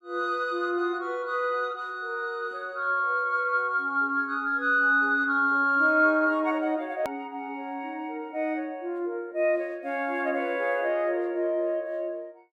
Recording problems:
hard cut with a click; at 7 s

